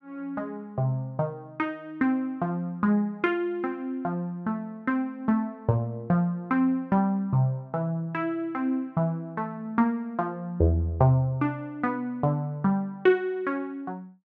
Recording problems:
none

